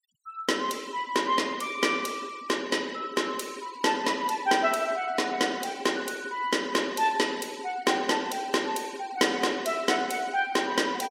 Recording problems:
denoising artefacts; signal-to-artefact ratio 21 dB

